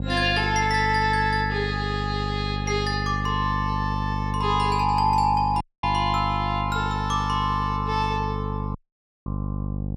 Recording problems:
electrical hum; 50 Hz, harmonics up to 600 Hz, SNR 5 dB
dropout; at 5.5 s and at 9 s for 0.5 s

